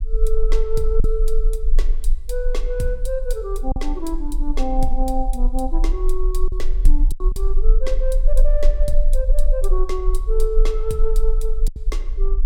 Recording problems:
low-frequency rumble; below 32 Hz, strongest tone 18 Hz, SNR -4 dB
lost packets; 3% of the sound replaced, filled with silence

